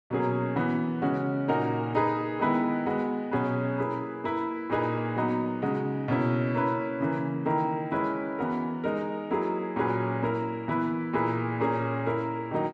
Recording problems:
none

